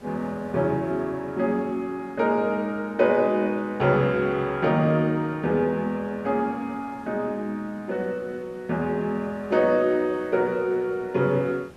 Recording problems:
hiss; slope -6 dB per octave, SNR 25 dB

